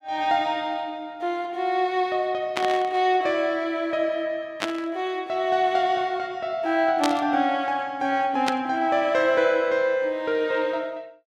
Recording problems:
burst of static; 4 times, first at 2.5 s; peak +1 dB vs average level

